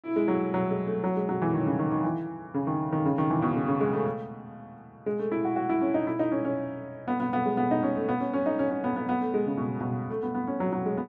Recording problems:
none

